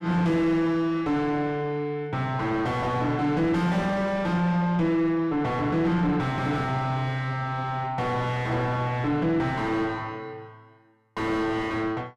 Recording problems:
distorted audio; soft clipping, signal-to-distortion ratio 5 dB

